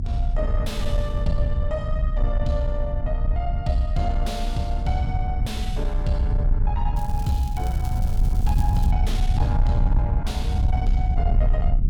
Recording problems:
distortion; soft clipping, signal-to-distortion ratio 10 dB
rumble; below 76 Hz, strongest tone 32 Hz, SNR -4 dB
crackle; from 7 to 9 s; loose cable, SNR 16 dB

